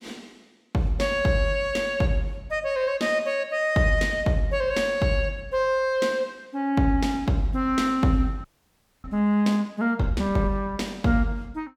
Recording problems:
frozen audio; at 8.5 s for 0.5 s

